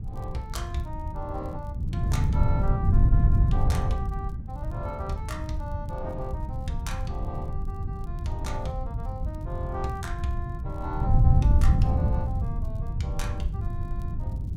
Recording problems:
wind on the microphone; below 120 Hz, SNR -8 dB
crackle; vinyl, SNR 29 dB

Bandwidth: 16.5 kHz